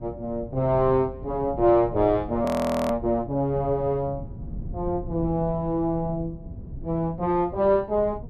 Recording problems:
rumble; below 150 Hz, SNR 14 dB
frozen audio; at 2.5 s

